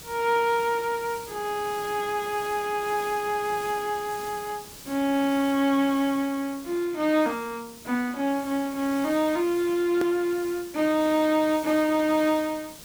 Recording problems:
background hiss; SNR 17 dB
edit click; at 10 s

